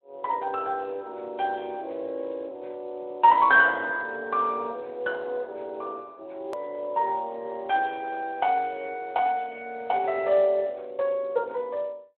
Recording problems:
telephone audio; 320 Hz to 3.7 kHz, Speex
hard cut with a click; at 6.5 s

